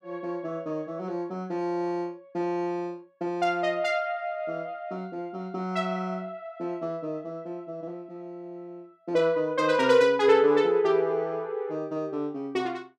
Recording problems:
none

